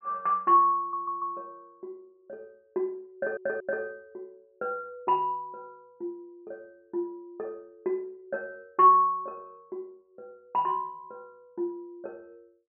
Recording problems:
audio stuttering; at 1 s and at 3 s

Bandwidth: 3 kHz